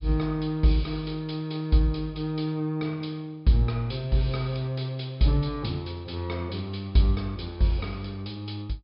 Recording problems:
treble cut off; nothing above 5.5 kHz

